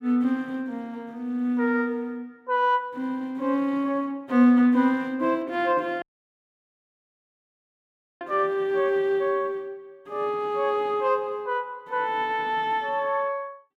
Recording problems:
audio cutting out; at 6 s for 2 s

